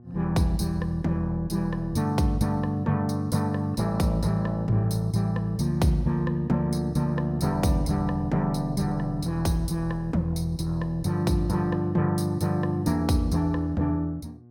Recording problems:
hum; 60 Hz, harmonics up to 720 Hz, SNR 23 dB

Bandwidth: 17 kHz